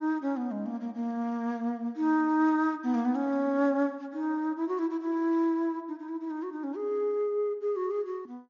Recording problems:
low-pass filter; nothing above 6.9 kHz

